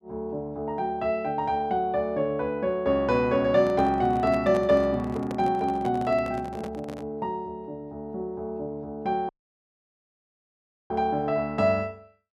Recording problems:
microphone handling noise; from 3.5 to 7 s; peak -5 dB vs average level
dropout; at 9.5 s for 1.5 s

